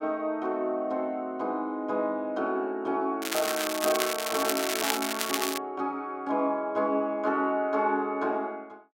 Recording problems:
crackle; from 3 to 5.5 s; loose cable, SNR 1 dB

